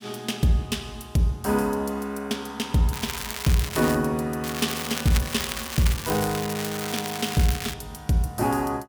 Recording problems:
crackle; from 3 to 4 s and from 4.5 to 7.5 s; loose cable, SNR 6 dB

